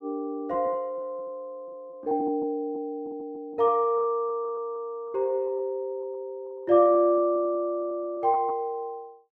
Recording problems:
lost packets; 7% of the sound replaced, filled with repeated pitch periods

